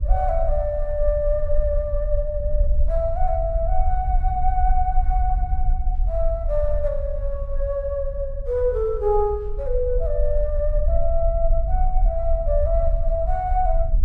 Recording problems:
low-frequency rumble; below 48 Hz, SNR 1 dB

